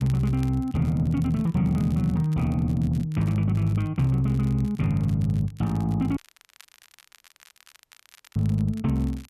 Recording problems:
crackle; vinyl, SNR 27 dB
audio cutting out; at 6 s for 2 s

